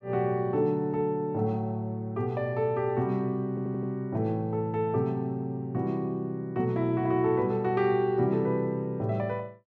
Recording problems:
audio stuttering; at 3.5 s

